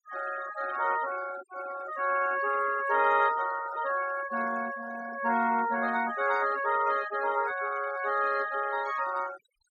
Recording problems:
denoising artefacts; signal-to-artefact ratio 16 dB

